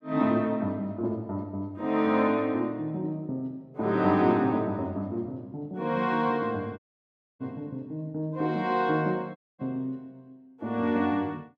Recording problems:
audio cutting out; at 7 s for 0.5 s and at 9.5 s

